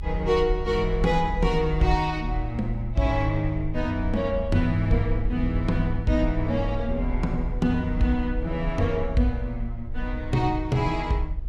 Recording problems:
rumble; below 64 Hz, strongest tone 40 Hz, SNR 7 dB

